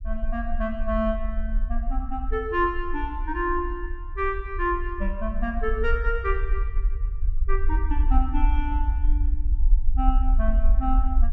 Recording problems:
low-frequency rumble; below 50 Hz, SNR -2 dB

